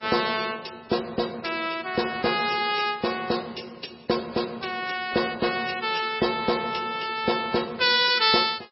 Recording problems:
lossy codec; MP3, log-spectral distance 7 dB, nothing above 4.9 kHz

